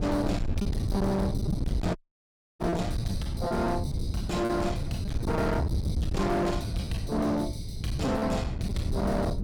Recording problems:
distorted audio; hard clipping, signal-to-distortion ratio 8 dB
wind noise; below 190 Hz, SNR 2 dB
packet loss; 6% of the sound replaced, filled with repeated pitch periods
dropout; at 2 s for 0.5 s

